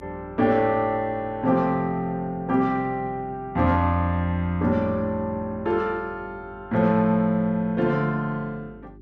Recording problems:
electrical hum; 50 Hz, harmonics up to 400 Hz, SNR 24 dB

